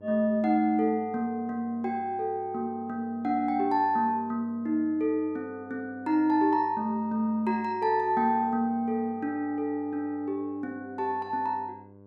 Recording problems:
hum; 50 Hz, harmonics up to 1.1 kHz, SNR 23 dB

